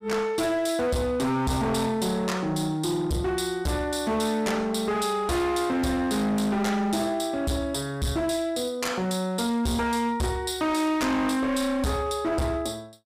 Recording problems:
distortion; hard clipping, signal-to-distortion ratio 8 dB

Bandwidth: 14.5 kHz